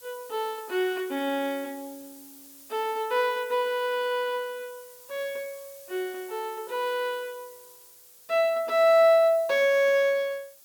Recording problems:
hiss; SNR 21 dB

